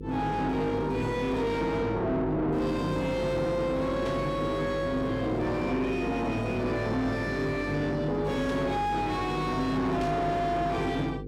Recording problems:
distorted audio; soft clipping, signal-to-distortion ratio 7 dB
hum; 50 Hz, harmonics up to 500 Hz, SNR 10 dB
burst of static; at 4 s, at 8.5 s and at 10 s; peak -10 dB vs average level

